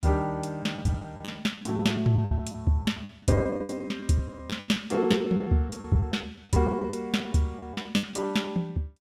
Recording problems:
lost packets; 18% of the sound replaced, filled with the last packet

